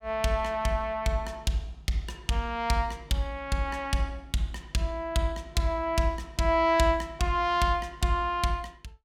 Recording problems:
none

